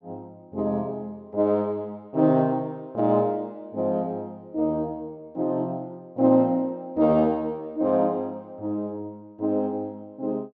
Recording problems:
low-pass filter; nothing above 8 kHz

